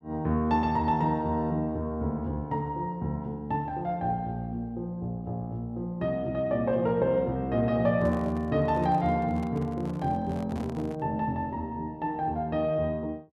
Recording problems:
microphone handling noise; from 8 to 11 s; peak -11 dB vs average level

